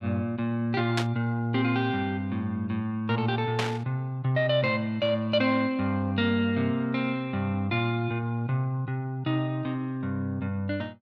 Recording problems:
static burst; at 1 s and at 3.5 s; peak +2 dB vs average level

